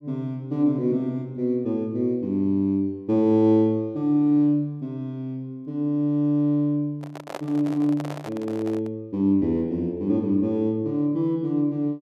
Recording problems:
microphone handling noise; from 7 to 9 s; peak -5 dB vs average level

